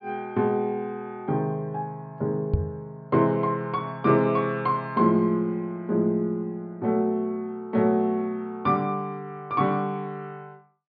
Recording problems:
low-pass filter; nothing above 5 kHz
knock on the microphone; at 2.5 s; peak +6 dB vs average level

